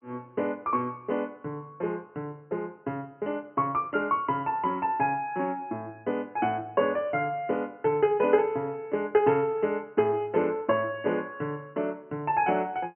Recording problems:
treble missing; nothing above 3.1 kHz

